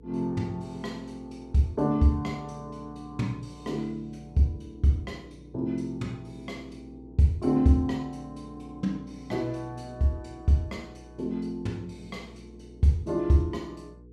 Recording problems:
hum; 60 Hz, harmonics up to 480 Hz, SNR 21 dB

